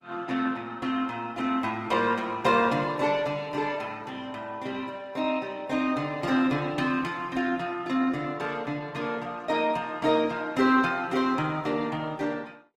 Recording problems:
lossy codec; Opus, log-spectral distance 3 dB, nothing above 19 kHz

